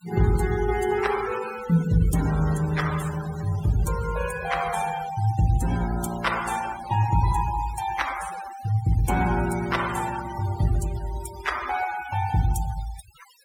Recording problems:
denoising artefacts; signal-to-artefact ratio 13 dB

